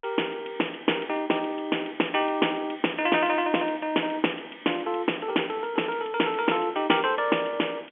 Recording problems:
telephone audio; 260 Hz to 3.3 kHz, G.711

